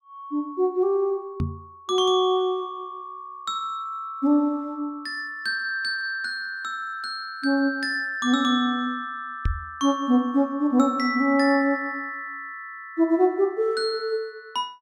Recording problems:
microphone thump; at 1.5 s and at 9.5 s; peak +2 dB vs average level

